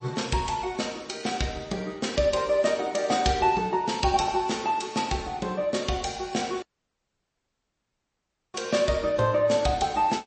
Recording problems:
lossy compression; MP3, log-spectral distance 4 dB, nothing above 8.2 kHz
audio cutting out; at 6.5 s for 2 s

